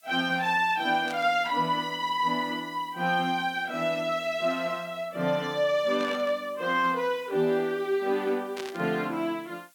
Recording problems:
background hiss; slope +5 dB per octave, SNR 29 dB
static burst; at 1 s, at 6 s and at 8.5 s; peak -8 dB vs average level

